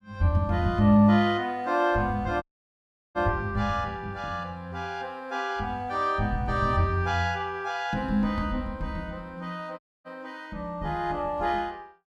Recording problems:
audio cutting out; at 2.5 s for 0.5 s and at 10 s

